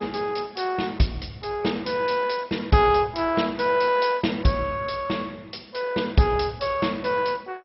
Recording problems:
lossy codec; MP2, log-spectral distance 7 dB, nothing above 5.5 kHz

